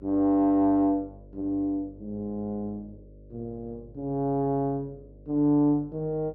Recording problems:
mains hum; 50 Hz, harmonics up to 600 Hz, SNR 24 dB

